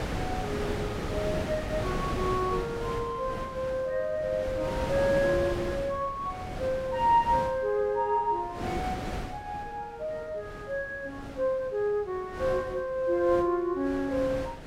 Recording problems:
wind on the microphone; below 780 Hz, SNR 7 dB

